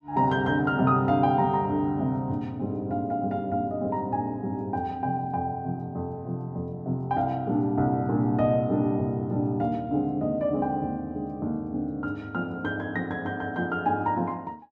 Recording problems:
none

